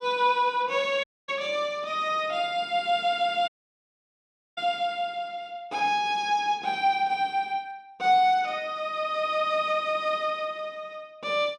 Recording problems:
audio cutting out; at 1 s and at 3.5 s for 1 s

